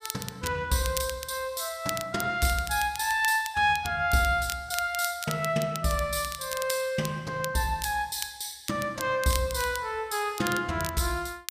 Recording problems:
crackle; vinyl, SNR 11 dB

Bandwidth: 15 kHz